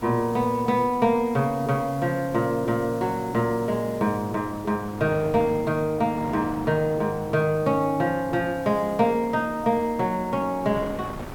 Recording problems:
hiss; slope 0 dB per octave, SNR 24 dB
wind on the microphone; below 790 Hz, SNR 16 dB

